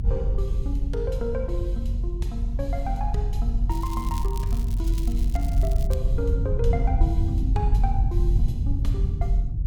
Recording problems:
rumble; below 78 Hz, strongest tone 44 Hz, SNR -8 dB
crackle; from 3.5 to 6 s; loose cable, SNR 12 dB

